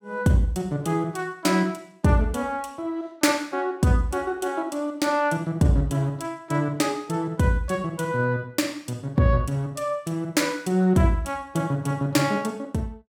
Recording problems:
none

